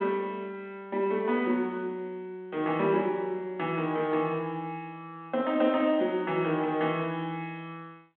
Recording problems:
telephone audio; 170 Hz to 3.8 kHz, G.726

